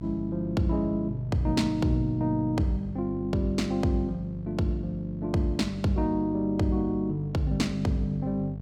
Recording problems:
hum; 50 Hz, harmonics up to 650 Hz, SNR 10 dB

